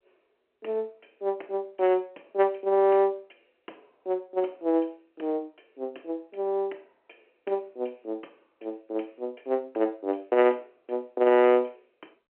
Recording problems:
telephone audio; 280 Hz to 3.2 kHz, G.711

